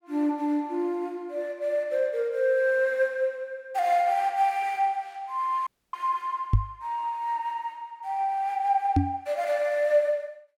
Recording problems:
audio cutting out; at 5.5 s
microphone bump; at 6.5 s and at 9 s; peak +8 dB vs average level

